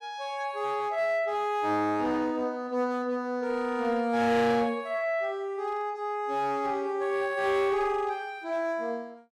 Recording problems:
distorted audio; hard clipping, uneven, signal-to-distortion ratio 11 dB

